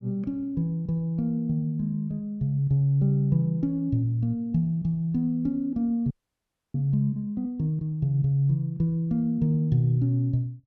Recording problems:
audio freezing; at 6 s for 0.5 s

